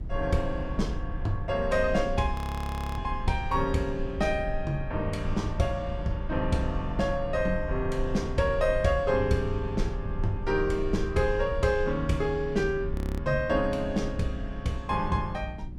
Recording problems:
electrical hum; 60 Hz, harmonics up to 360 Hz, SNR 15 dB
rumble; below 68 Hz, SNR 9 dB
frozen audio; at 2.5 s for 0.5 s and at 13 s

